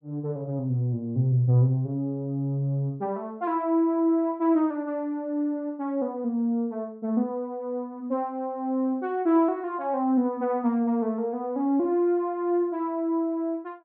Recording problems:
none

